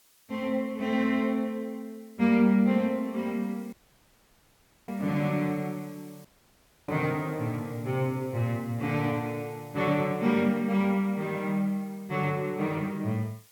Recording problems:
hiss; slope +1 dB per octave, SNR 27 dB
audio cutting out; at 3.5 s for 1 s and at 6.5 s for 0.5 s

